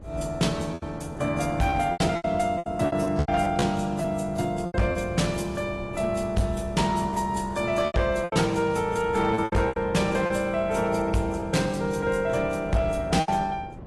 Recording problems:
lossy compression; AAC, log-spectral distance 3 dB, nothing above 12 kHz
distorted audio; hard clipping, signal-to-distortion ratio 12 dB
wind on the microphone; below 400 Hz, SNR 16 dB
packet loss; 9% of the sound replaced, filled with repeated pitch periods

